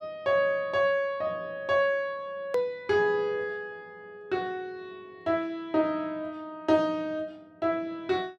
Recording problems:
edit click; at 2.5 s

